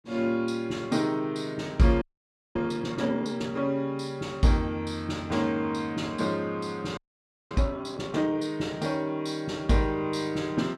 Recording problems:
audio freezing; at 2 s for 0.5 s and at 7 s for 0.5 s

